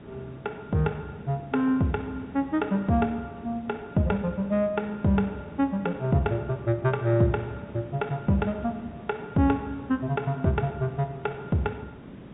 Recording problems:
treble missing; nothing above 4 kHz
background hiss; SNR 17 dB

